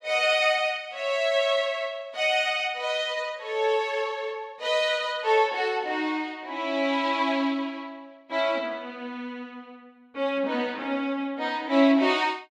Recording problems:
none

